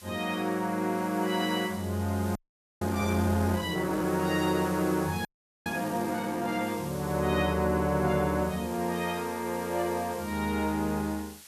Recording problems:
background hiss; slope +2 dB per octave, SNR 16 dB
frozen audio; at 2.5 s and at 5.5 s

